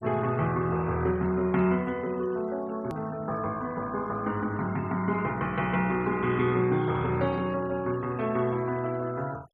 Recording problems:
noise reduction artefacts; signal-to-artefact ratio 22 dB
hard cut with a click; at 3 s

